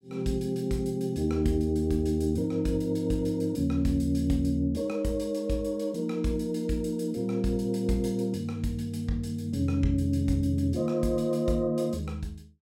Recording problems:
none

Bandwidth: 16 kHz